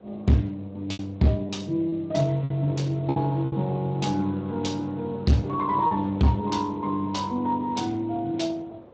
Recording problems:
lossy codec; Speex, log-spectral distance 3 dB, nothing above 7.3 kHz
distortion; hard clipping, signal-to-distortion ratio 11 dB
wind on the microphone; below 640 Hz, SNR 20 dB
lost packets; 4% of the sound replaced, filled with repeated pitch periods

